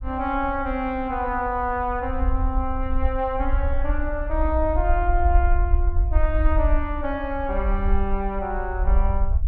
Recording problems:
low-frequency rumble; below 58 Hz, SNR 0 dB

